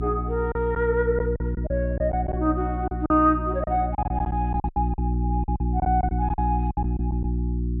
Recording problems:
low-pass filter; nothing above 4 kHz
electrical hum; 60 Hz, harmonics up to 360 Hz, SNR 1 dB
lost packets; 12% of the sound replaced, filled with silence

